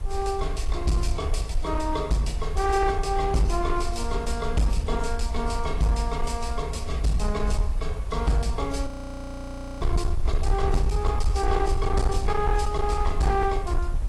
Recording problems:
lossy compression; AAC, log-spectral distance 2 dB, nothing above 18.9 kHz
distorted audio; hard clipping, signal-to-distortion ratio 11 dB
hiss; slope -5 dB per octave, SNR 22 dB
low-frequency rumble; below 62 Hz, SNR 3 dB
wind noise; below 490 Hz, SNR 19 dB
frozen audio; at 9 s for 1 s

